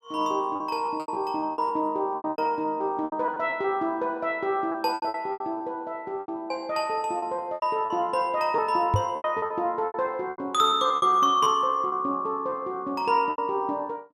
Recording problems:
packet loss; 13% of the sound replaced, filled with repeated pitch periods
microphone thump; at 9 s; peak +5 dB vs average level

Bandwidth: 15.5 kHz